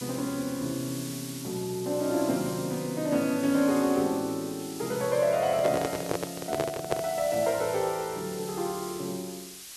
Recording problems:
hiss; slope +3 dB per octave, SNR 11 dB
handling noise; from 5.5 to 7 s; peak +4 dB vs average level

